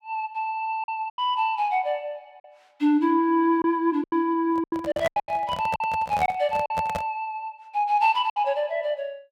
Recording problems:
packet loss; 8% of the sound replaced, filled with silence
microphone handling noise; from 4.5 to 7 s; peak -2 dB vs average level

